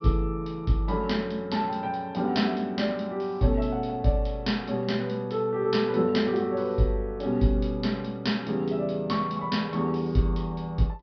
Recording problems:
treble cut off; nothing above 5.5 kHz

